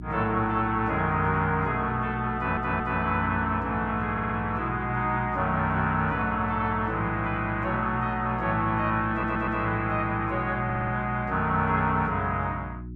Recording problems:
hum; 60 Hz, harmonics up to 360 Hz, SNR 12 dB
stutter; 4 times, first at 2.5 s

